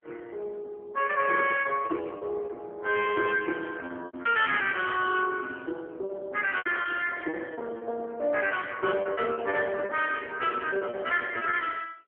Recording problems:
telephone audio; 280 Hz to 3.1 kHz, AMR-NB
lost packets; 8% of the sound replaced, filled with repeated pitch periods

